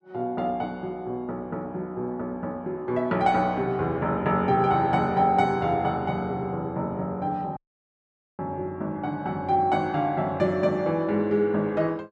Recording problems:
dropout; at 7.5 s for 1 s

